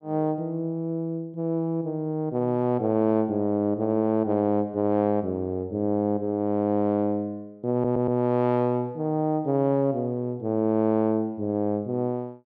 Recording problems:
stutter; at 7.5 s

